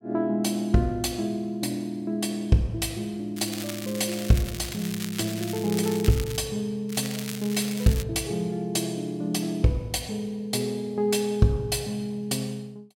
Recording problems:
crackle; from 3.5 to 6.5 s and from 7 to 8 s; loose cable, SNR 10 dB

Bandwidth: 16.5 kHz